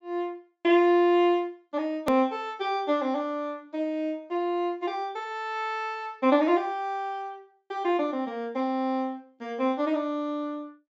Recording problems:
treble missing; nothing above 8 kHz
edit click; at 2 s

